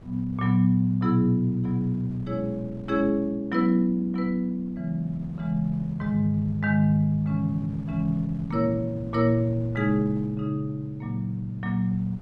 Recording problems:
wind on the microphone; below 230 Hz, SNR 21 dB

